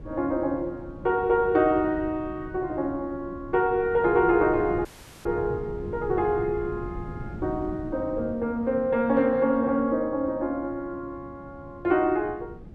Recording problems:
wind noise; below 220 Hz, SNR 15 dB
dropout; at 5 s

